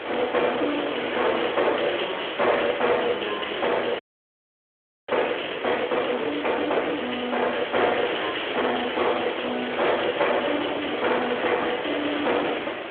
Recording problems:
phone line; 300 Hz to 3.5 kHz, Speex
distorted audio; hard clipping, uneven, signal-to-distortion ratio 10 dB
hiss; SNR 6 dB
audio freezing; at 4 s for 1 s

